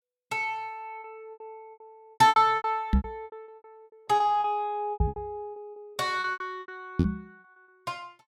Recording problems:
packet loss; 20% of the sound replaced, filled with repeated pitch periods
microphone thump; at 3 s, at 5 s and at 7 s; peak +7 dB vs average level

